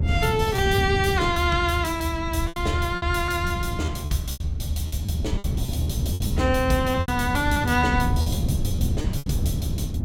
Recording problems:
low-frequency rumble; below 86 Hz, strongest tone 76 Hz, SNR 5 dB
wind noise; below 190 Hz, SNR 5 dB
lost packets; 10% of the sound replaced, filled with repeated pitch periods

